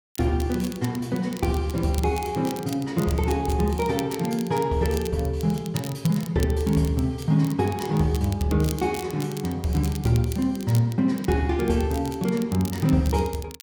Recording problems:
crackle; vinyl, SNR 17 dB

